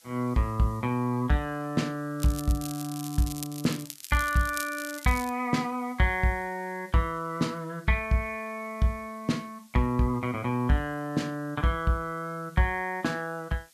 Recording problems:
background hiss; SNR 27 dB
crackle; from 2 to 5.5 s; loose cable, SNR 11 dB

